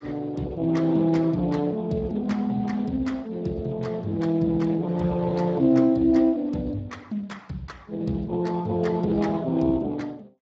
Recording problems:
lossy codec; Speex, log-spectral distance 3 dB

